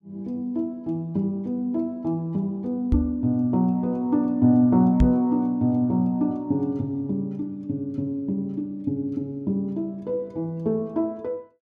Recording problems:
knock on the microphone; at 3 s and at 5 s; peak +7 dB vs average level

